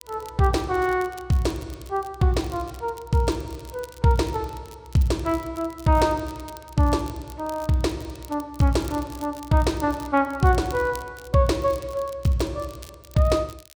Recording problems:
crackle; vinyl, SNR 23 dB

